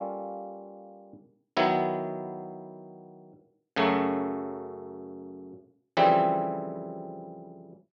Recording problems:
none

